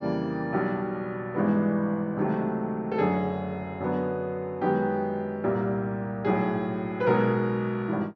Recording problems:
treble missing; nothing above 6.3 kHz

